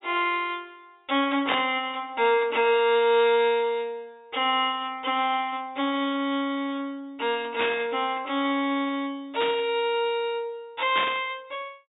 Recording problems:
treble missing; nothing above 4 kHz
burst of static; 4 times, first at 1.5 s; peak +1 dB vs average level

